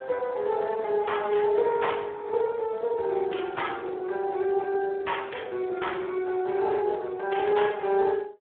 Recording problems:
phone line; 280 Hz to 3.5 kHz, Speex

